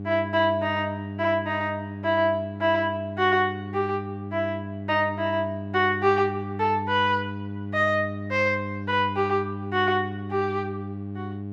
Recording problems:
electrical hum; 50 Hz, harmonics up to 800 Hz, SNR 9 dB

